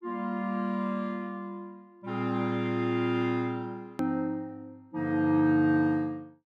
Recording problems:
click at an edit; at 4 s

